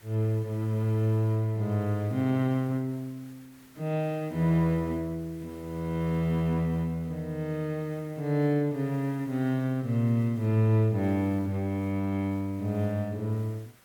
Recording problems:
hiss; SNR 27 dB

